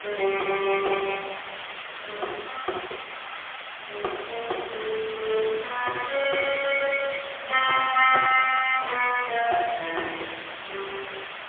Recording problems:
phone line; 340 Hz to 3.3 kHz, AMR-NB, then MP3
background hiss; SNR 11 dB

